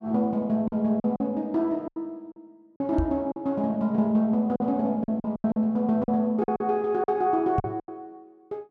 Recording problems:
lost packets; 10% of the sound replaced, filled with silence
microphone bump; at 3 s and at 7.5 s; peak +2 dB vs average level

